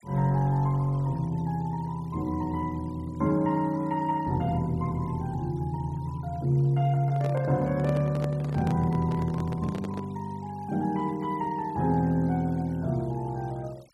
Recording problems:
noise reduction artefacts; signal-to-artefact ratio 28 dB
microphone handling noise; from 7 to 10 s; peak -3 dB vs average level

